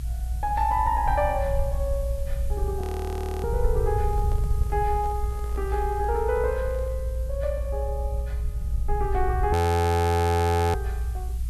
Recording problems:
hiss; slope +3 dB per octave, SNR 23 dB
rumble; below 86 Hz, SNR 1 dB
frozen audio; at 3 s for 0.5 s and at 9.5 s for 1 s
microphone handling noise; from 4 to 7 s; peak -11 dB vs average level

